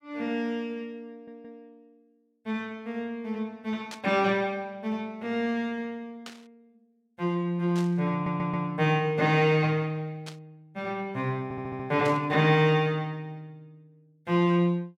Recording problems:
stutter; at 1 s, at 8 s and at 11 s
static burst; 5 times, first at 4 s; peak -9 dB vs average level

